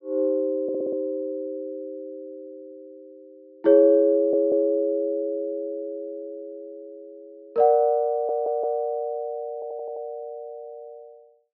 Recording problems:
treble missing; nothing above 5.5 kHz
stutter; 4 times, first at 0.5 s

